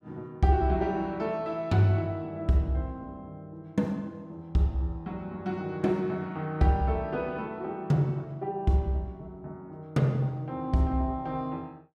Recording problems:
none

